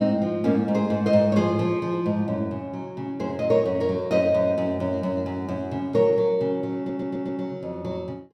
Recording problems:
audio stuttering; at 7 s

